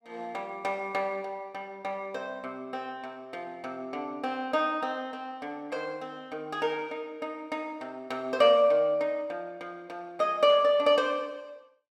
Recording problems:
none

